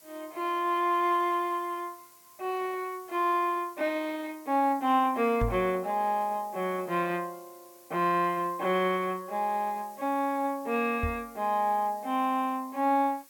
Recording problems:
hiss; slope 0 dB per octave, SNR 24 dB
microphone thump; at 5.5 s and at 11 s; peak +1 dB vs average level

